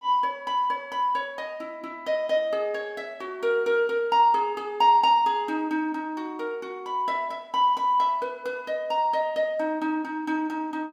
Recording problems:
none

